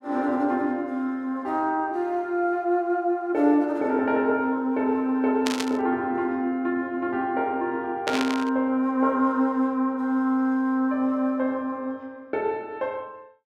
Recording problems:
burst of static; at 5.5 s and at 8 s; peak +1 dB vs average level

